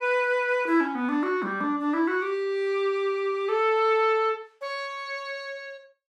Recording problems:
none

